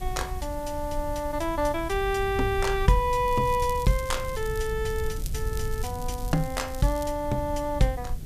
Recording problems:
hiss; slope +3 dB per octave, SNR 21 dB
rumble; below 82 Hz, SNR 8 dB
crackle; from 3.5 to 4.5 s and from 5 to 7 s; loose cable, SNR 17 dB

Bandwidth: 14.5 kHz